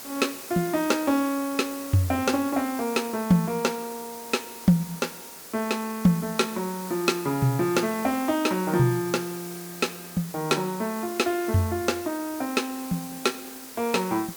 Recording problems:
background hiss; SNR 13 dB

